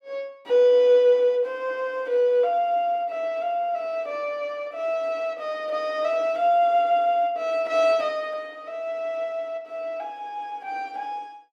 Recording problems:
none

